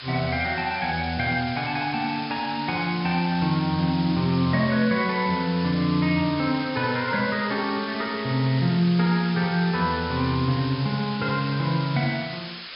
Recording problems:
treble cut off; nothing above 5.5 kHz
hiss; SNR 11 dB

